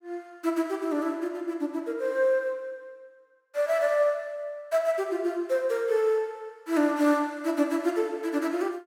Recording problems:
none

